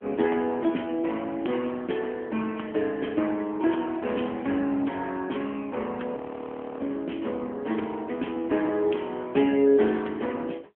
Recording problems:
telephone audio; 220 Hz to 3.3 kHz, AMR-NB
audio freezing; at 6 s for 0.5 s

